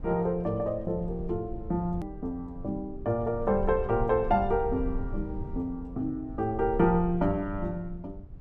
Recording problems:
rumble; below 84 Hz, SNR 11 dB
click at an edit; at 2 s

